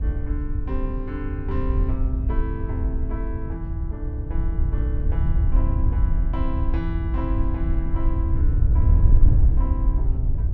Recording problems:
wind noise; below 76 Hz, SNR -10 dB

